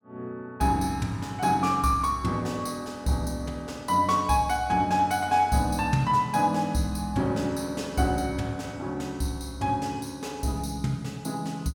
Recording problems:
none

